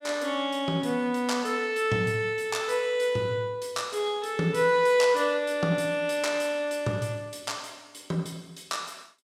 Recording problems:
none

